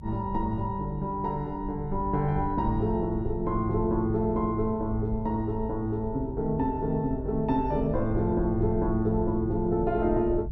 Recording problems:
low-frequency rumble; below 86 Hz, SNR 10 dB

